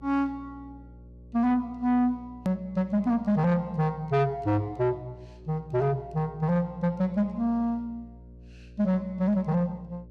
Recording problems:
distortion; soft clipping, signal-to-distortion ratio 10 dB
hum; 60 Hz, harmonics up to 600 Hz, SNR 22 dB
hard cut with a click; at 2.5 s

